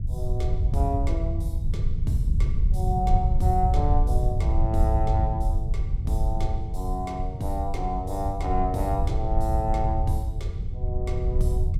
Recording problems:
rumble; below 86 Hz, SNR -3 dB

